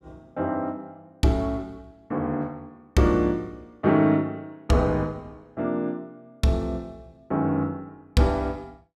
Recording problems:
none

